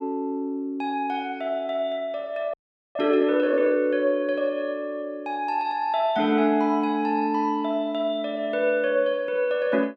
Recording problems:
audio freezing; at 2.5 s

